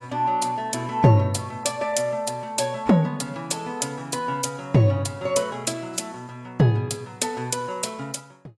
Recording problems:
lossy codec; AAC, log-spectral distance 3 dB, nothing above 11.3 kHz

